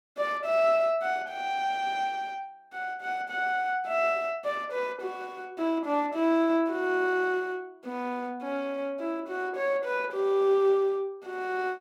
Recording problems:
none

